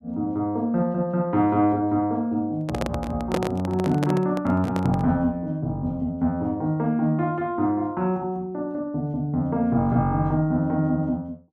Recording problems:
handling noise; from 2.5 to 5 s; peak +2 dB vs average level

